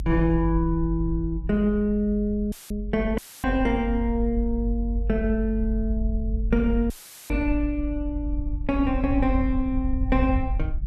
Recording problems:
low-frequency rumble; below 54 Hz, strongest tone 48 Hz, SNR 4 dB
audio cutting out; at 2.5 s, at 3 s and at 7 s; filled with static

